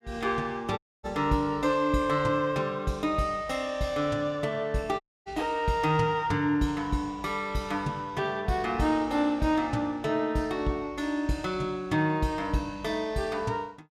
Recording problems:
dropout; at 1 s and at 5 s

